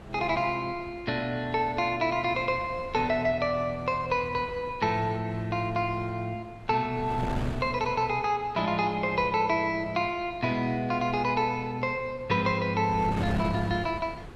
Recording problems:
wind noise; below 570 Hz, SNR 14 dB

